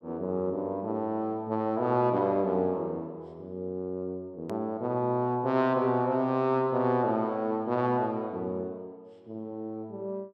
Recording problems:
click at an edit; at 4.5 s

